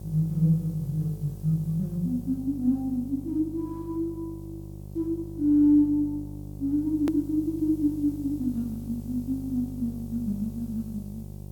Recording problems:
hum; 50 Hz, harmonics up to 750 Hz, SNR 13 dB
hiss; slope +5 dB per octave, SNR 29 dB
hard cut with a click; at 7 s

